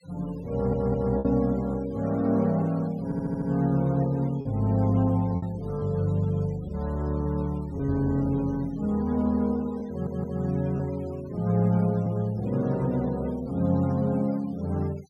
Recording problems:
denoising artefacts; signal-to-artefact ratio 24 dB
lost packets; 2% of the sound replaced, filled with repeated pitch periods
stutter; at 0.5 s, at 3 s and at 10 s

